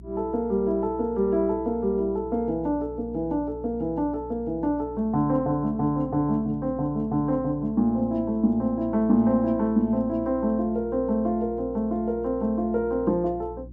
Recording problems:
mains hum; 60 Hz, harmonics up to 360 Hz, SNR 18 dB

